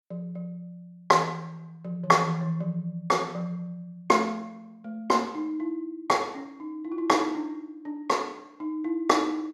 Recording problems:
none

